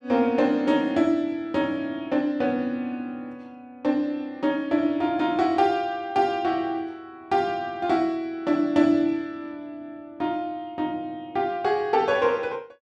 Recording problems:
none

